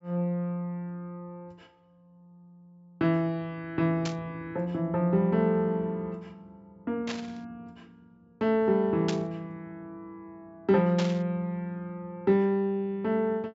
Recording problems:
low-pass filter; nothing above 8 kHz
burst of static; 4 times, first at 4 s; peak -2 dB vs average level

